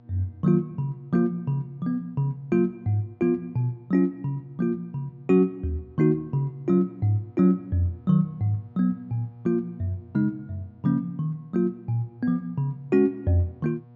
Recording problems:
hum; 60 Hz, harmonics up to 960 Hz, SNR 26 dB

